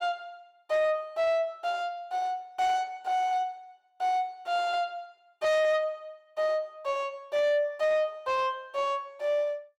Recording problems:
distorted audio; soft clipping, signal-to-distortion ratio 10 dB

